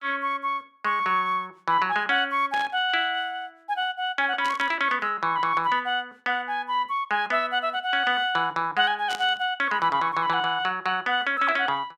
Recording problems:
static burst; at 2.5 s, at 4.5 s and at 9 s; peak -6 dB vs average level

